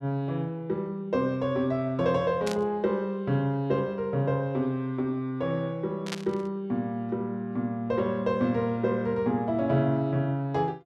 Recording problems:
static burst; at 2.5 s and at 6 s; peak -2 dB vs average level

